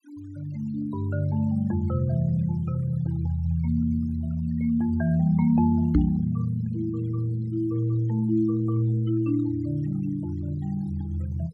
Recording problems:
denoising artefacts; signal-to-artefact ratio 24 dB
microphone thump; at 6 s; peak +7 dB vs average level

